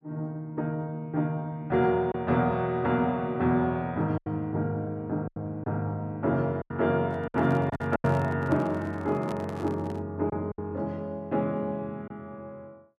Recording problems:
lost packets; 5% of the sound replaced, filled with silence
microphone handling noise; from 7 to 10 s; peak -7 dB vs average level

